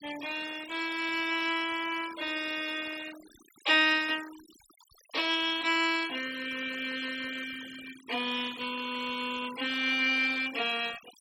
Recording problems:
noise reduction artefacts; signal-to-artefact ratio 15 dB

